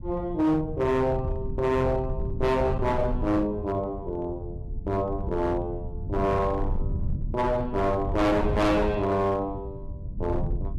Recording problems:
distorted audio; hard clipping, signal-to-distortion ratio 7 dB
low-frequency rumble; below 130 Hz, SNR 7 dB

